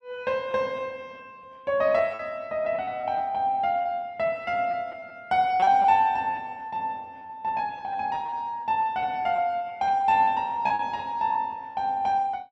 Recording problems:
packet loss; 8% of the sound replaced, filled with repeated pitch periods

